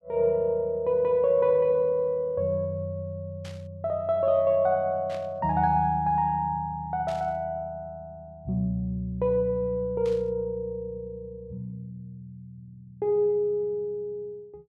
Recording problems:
burst of static; 4 times, first at 3.5 s; peak -14 dB vs average level

